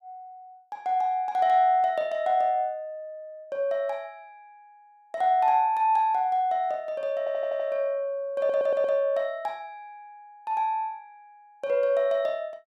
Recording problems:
audio stuttering; at 7 s and at 8.5 s

